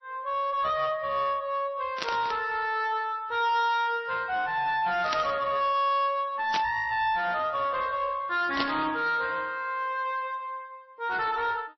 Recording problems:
lossy codec; MP3, then AAC, log-spectral distance 2 dB, nothing above 5.7 kHz
distortion; soft clipping, signal-to-distortion ratio 10 dB
static burst; 4 times, first at 2 s; peak 0 dB vs average level

